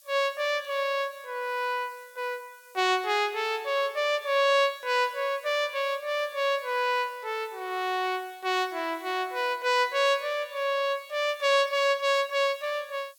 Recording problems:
hiss; SNR 27 dB

